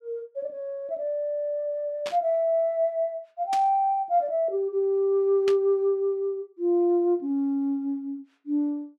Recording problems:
static burst; at 2 s, at 3.5 s and at 5.5 s; peak -5 dB vs average level

